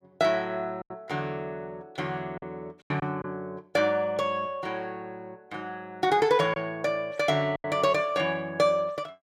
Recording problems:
packet loss; 4% of the sound replaced, filled with silence

